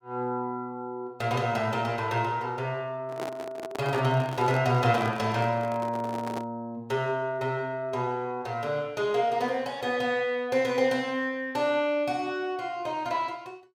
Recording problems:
handling noise; from 3 to 6.5 s; peak -4 dB vs average level

